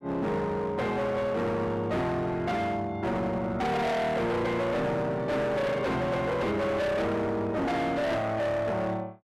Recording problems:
distortion; hard clipping, uneven, signal-to-distortion ratio 7 dB

